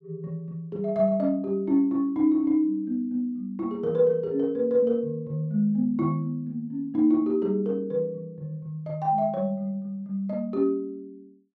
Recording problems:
none

